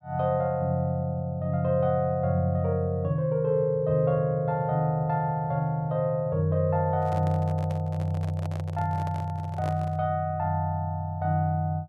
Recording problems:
handling noise; from 7 to 10 s; peak -9 dB vs average level

